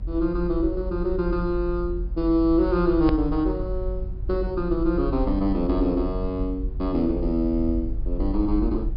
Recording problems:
treble missing; nothing above 5.5 kHz
low-frequency rumble; below 54 Hz, strongest tone 46 Hz, SNR 7 dB
hard cut with a click; at 3 s

